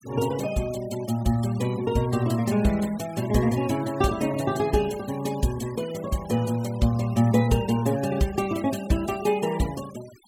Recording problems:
noise reduction artefacts; signal-to-artefact ratio 18 dB

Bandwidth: 17.5 kHz